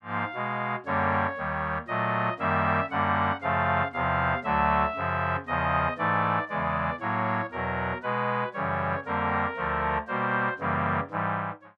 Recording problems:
none

